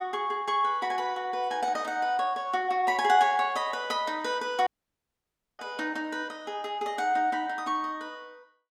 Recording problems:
dropout; at 4.5 s for 1 s

